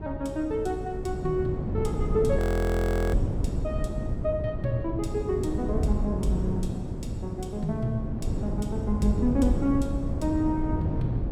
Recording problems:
wind on the microphone; below 210 Hz, SNR 1 dB
audio freezing; at 2.5 s for 0.5 s

